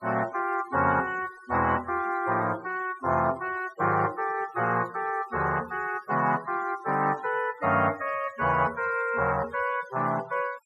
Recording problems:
denoising artefacts; signal-to-artefact ratio 21 dB

